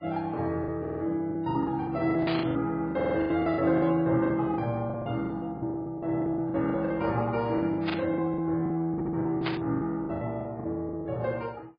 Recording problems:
lossy compression; Vorbis, then MP3, log-spectral distance 2 dB
lost packets; 17% of the sound replaced, filled with the last packet
audio stuttering; at 1 s, at 3 s and at 9 s
static burst; at 2.5 s, at 8 s and at 9.5 s; peak +2 dB vs average level

